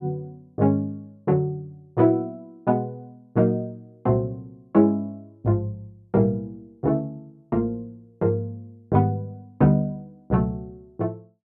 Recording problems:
none

